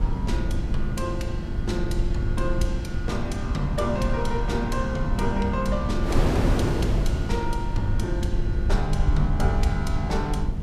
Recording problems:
electrical hum; 50 Hz, harmonics up to 800 Hz, SNR 8 dB
low-frequency rumble; below 74 Hz, SNR 0 dB
wind on the microphone; below 430 Hz, SNR 4 dB

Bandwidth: 15 kHz